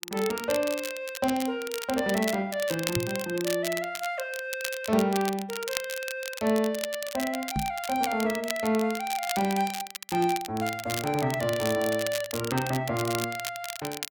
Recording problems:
crackling; vinyl, SNR 8 dB
microphone thump; at 3 s and at 7.5 s; peak +2 dB vs average level

